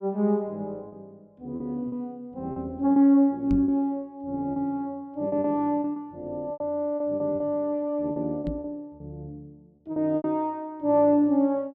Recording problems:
packet loss; 8% of the sound replaced, filled with repeated pitch periods
knock on the microphone; at 3.5 s and at 8.5 s; peak 0 dB vs average level

